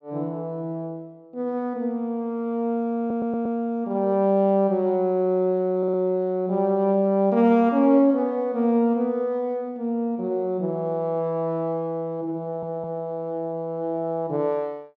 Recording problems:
stutter; at 3 s, at 6 s and at 12 s

